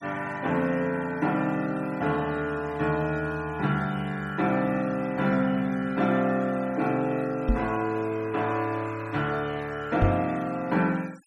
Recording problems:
noise reduction artefacts; signal-to-artefact ratio 23 dB
microphone thump; at 7.5 s and at 10 s; peak +6 dB vs average level

